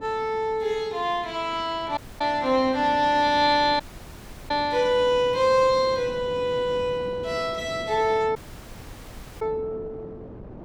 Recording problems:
wind noise; below 460 Hz, SNR 18 dB
dropout; at 2 s, at 4 s for 0.5 s and at 8.5 s for 1 s

